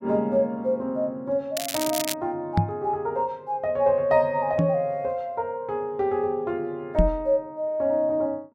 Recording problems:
crackling; at 1.5 s; loose cable, SNR 5 dB
knock on the microphone; at 2.5 s, at 4.5 s and at 7 s; peak +8 dB vs average level

